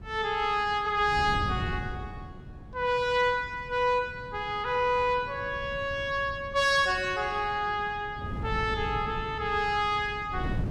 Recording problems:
wind on the microphone; below 190 Hz, SNR 12 dB

